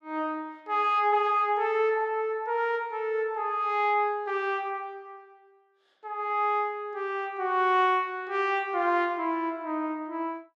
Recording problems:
none

